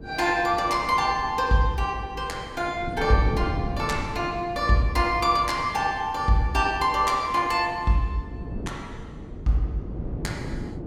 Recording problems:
hum; 50 Hz, harmonics up to 450 Hz, SNR 22 dB
wind noise; below 300 Hz, SNR 13 dB

